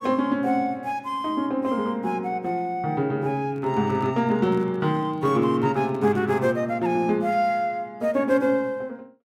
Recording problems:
microphone handling noise; from 3.5 to 6.5 s; peak -10 dB vs average level

